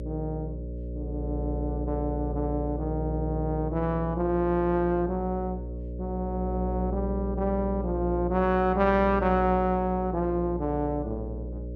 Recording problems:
hum; 60 Hz, harmonics up to 600 Hz, SNR 6 dB

